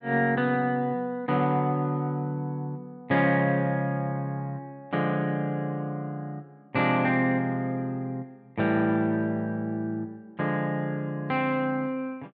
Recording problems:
none

